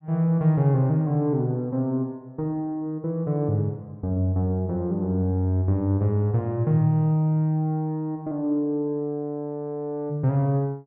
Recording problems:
none

